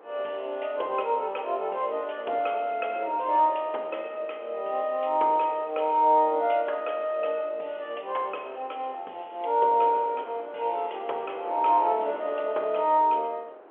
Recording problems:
phone line; 340 Hz to 3.4 kHz, G.711
wind noise; below 880 Hz, SNR 19 dB

